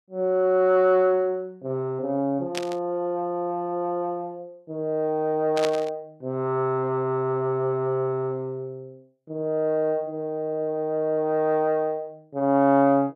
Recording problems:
static burst; at 2.5 s and at 5.5 s; peak -2 dB vs average level

